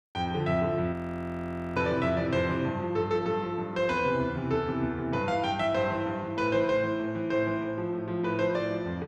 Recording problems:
frozen audio; at 1 s for 1 s

